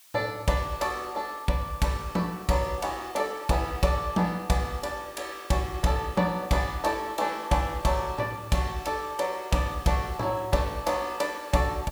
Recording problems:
hiss; slope +3 dB per octave, SNR 22 dB

